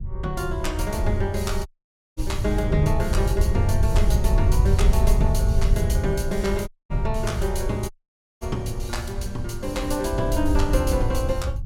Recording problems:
rumble; below 78 Hz, SNR 5 dB
wind on the microphone; below 82 Hz, SNR -2 dB
dropout; at 1.5 s for 0.5 s, at 6.5 s and at 8 s for 0.5 s

